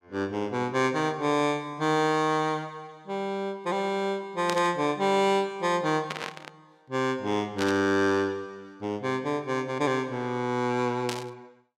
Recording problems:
static burst; 4 times, first at 4.5 s; peak 0 dB vs average level

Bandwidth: 16 kHz